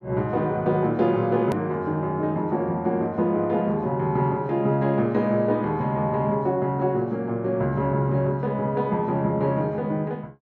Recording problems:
edit click; at 1.5 s

